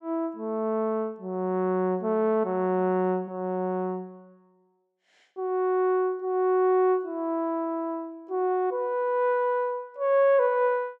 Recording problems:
none

